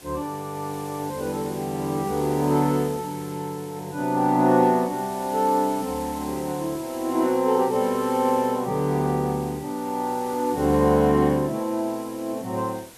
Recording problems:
background hiss; SNR 18 dB

